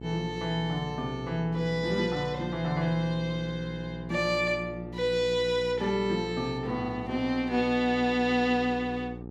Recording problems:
electrical hum; 60 Hz, harmonics up to 960 Hz, SNR 12 dB

